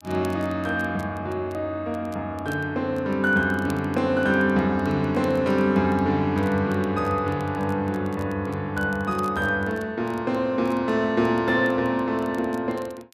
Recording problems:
crackling; vinyl, SNR 28 dB

